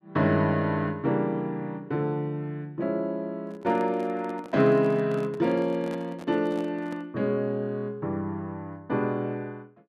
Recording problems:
handling noise; from 3.5 to 7 s; peak -9 dB vs average level

